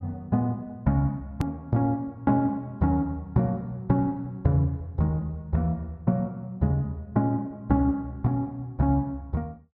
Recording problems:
click at an edit; at 1.5 s

